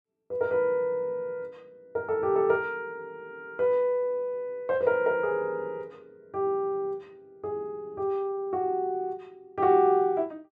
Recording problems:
none

